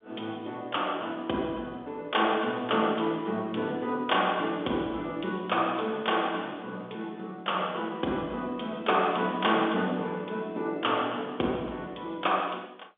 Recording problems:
phone line; 220 Hz to 3.6 kHz, G.711

